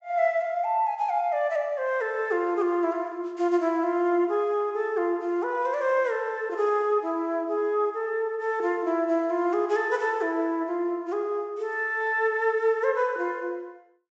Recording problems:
low-pass filter; nothing above 8 kHz

